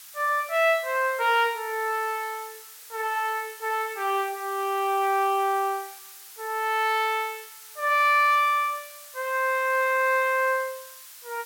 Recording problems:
background hiss; SNR 18 dB

